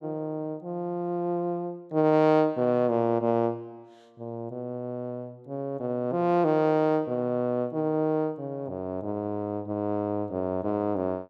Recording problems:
none

